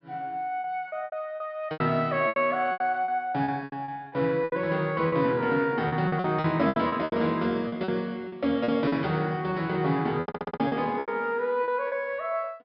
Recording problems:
treble cut off; nothing above 5.4 kHz
packet loss; 13% of the sound replaced, filled with repeated pitch periods
stutter; at 10 s

